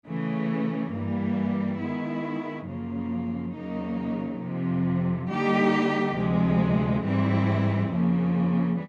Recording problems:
none

